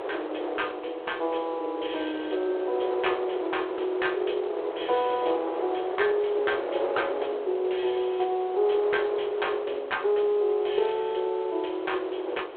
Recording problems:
telephone audio; 320 Hz to 3.4 kHz, G.726
background hiss; SNR 26 dB
wind on the microphone; below 730 Hz, SNR 7 dB

